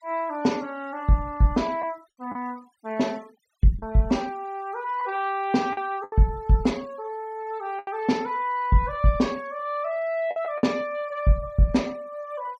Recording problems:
noise reduction artefacts; signal-to-artefact ratio 25 dB
packet loss; 3% of the sound replaced, filled with the last packet

